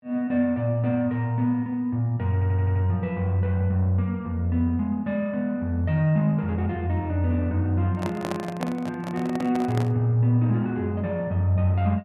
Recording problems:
stutter; at 2.5 s
microphone handling noise; from 8 to 10 s; peak -2 dB vs average level

